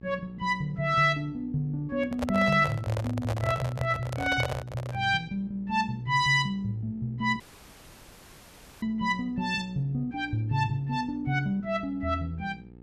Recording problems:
hum; 60 Hz, harmonics up to 900 Hz, SNR 22 dB
microphone handling noise; from 2 to 5 s; peak 0 dB vs average level
audio cutting out; at 7.5 s for 1.5 s

